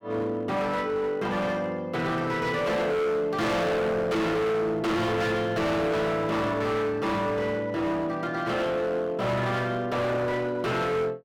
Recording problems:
distorted audio; hard clipping, signal-to-distortion ratio 6 dB

